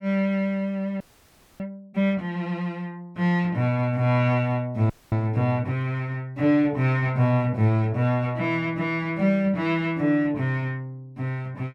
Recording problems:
audio freezing; at 1 s for 0.5 s and at 5 s

